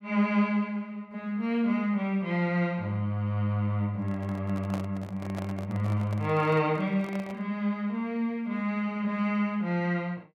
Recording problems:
microphone handling noise; from 4 to 7.5 s; peak -5 dB vs average level

